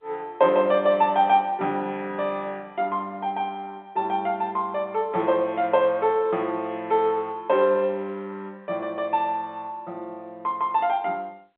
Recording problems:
telephone audio; 260 Hz to 3.6 kHz, G.711

